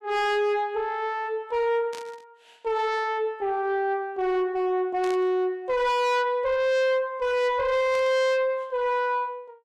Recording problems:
distorted audio; soft clipping, signal-to-distortion ratio 7 dB
burst of static; at 2 s, at 5 s and at 8 s; peak -11 dB vs average level

